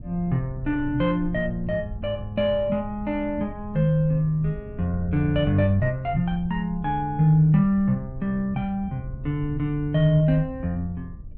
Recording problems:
rumble; below 98 Hz, SNR 15 dB

